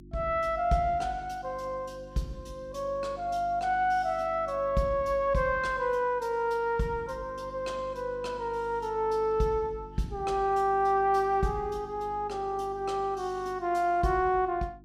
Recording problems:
hum; 50 Hz, harmonics up to 350 Hz, SNR 20 dB

